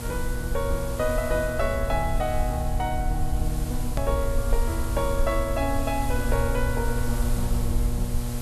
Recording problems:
electrical hum; 60 Hz, harmonics up to 1.3 kHz, SNR 5 dB
hiss; slope -2 dB per octave, SNR 10 dB
low-frequency rumble; below 62 Hz, SNR 1 dB
hard cut with a click; at 4 s

